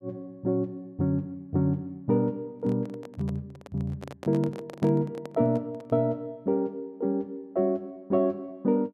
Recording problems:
microphone handling noise; from 2.5 to 6 s; peak -7 dB vs average level

